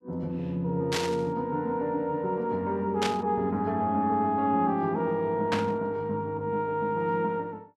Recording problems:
burst of static; at 1 s, at 3 s and at 5.5 s; peak +2 dB vs average level

